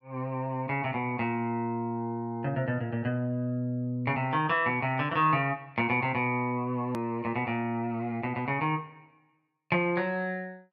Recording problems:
hard cut with a click; at 7 s

